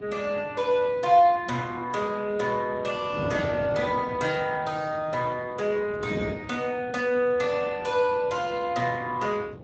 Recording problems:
lossy codec; Speex, log-spectral distance 4 dB
wind noise; below 450 Hz, SNR 14 dB

